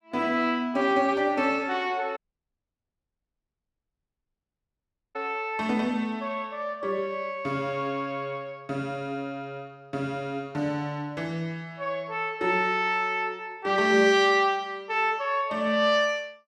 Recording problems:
dropout; at 2 s for 3 s

